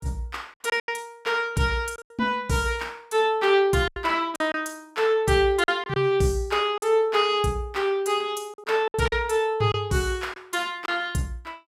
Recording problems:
lost packets; 6% of the sound replaced, filled with silence

